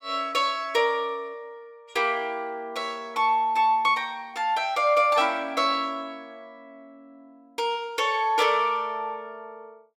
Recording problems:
none

